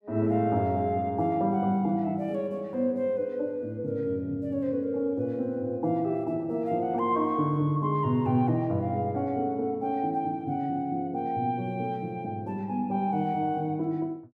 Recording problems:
none

